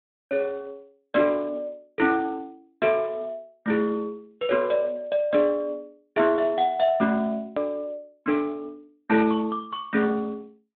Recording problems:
treble cut off; nothing above 3.6 kHz
codec artefacts; Speex, log-spectral distance 2 dB
hard cut with a click; at 7.5 s

